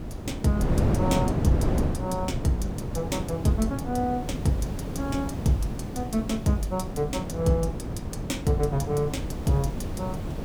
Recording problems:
hiss; slope -1 dB per octave, SNR 24 dB
wind on the microphone; below 310 Hz, SNR 2 dB

